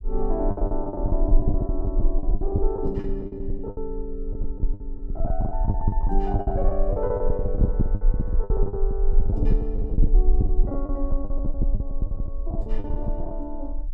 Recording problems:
rumble; below 44 Hz, SNR -4 dB
packet loss; 20% of the sound replaced, filled with the last packet

